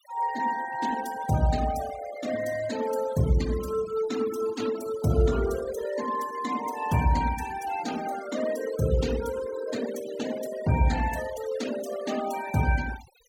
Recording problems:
denoising artefacts; signal-to-artefact ratio 13 dB

